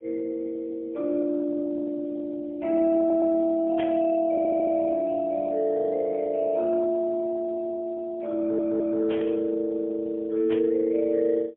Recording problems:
telephone audio; 260 Hz to 2 kHz, AMR-NB, then MP3
audio stuttering; at 3 s, at 4.5 s and at 8.5 s
burst of static; at 4 s, at 9 s and at 11 s; peak -6 dB vs average level

